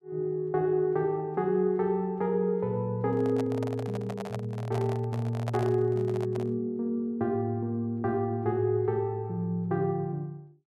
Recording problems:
microphone handling noise; from 3 to 6.5 s; peak -4 dB vs average level

